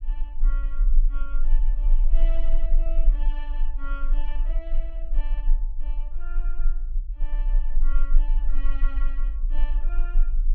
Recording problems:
low-frequency rumble; below 32 Hz, strongest tone 18 Hz, SNR -17 dB

